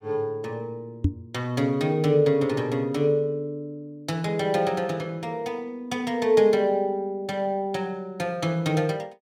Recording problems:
knock on the microphone; at 1 s; peak +7 dB vs average level

